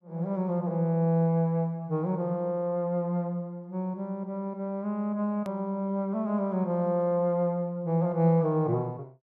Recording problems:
edit click; at 5.5 s

